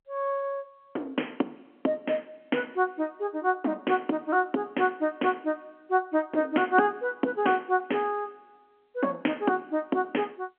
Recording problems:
phone line; 220 Hz to 3.3 kHz, G.711

